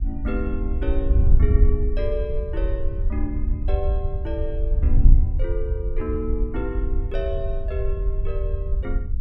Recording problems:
wind on the microphone; below 68 Hz, SNR -7 dB

